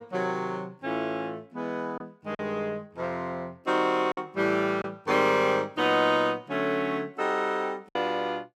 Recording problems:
packet loss; 2% of the sound replaced, filled with silence

